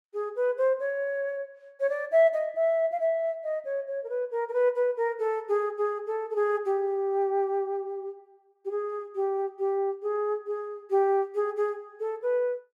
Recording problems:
none

